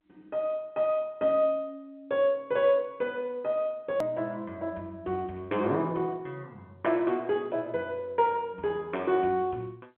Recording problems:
telephone audio; 190 Hz to 3.5 kHz, G.711
edit click; at 4 s

